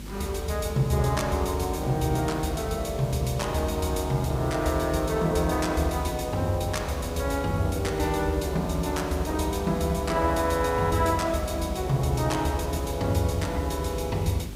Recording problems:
mains hum; 50 Hz, harmonics up to 400 Hz, SNR 14 dB
hiss; SNR 16 dB

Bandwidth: 15.5 kHz